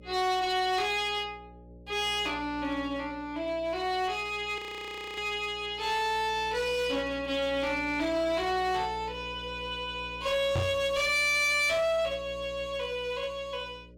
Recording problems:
distorted audio; hard clipping, uneven, signal-to-distortion ratio 11 dB
electrical hum; 60 Hz, harmonics up to 600 Hz, SNR 19 dB
frozen audio; at 4.5 s for 0.5 s
knock on the microphone; at 11 s; peak +3 dB vs average level

